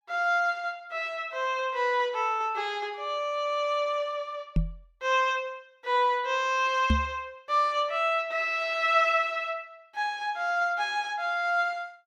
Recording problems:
microphone bump; at 4.5 s and at 7 s; peak +6 dB vs average level

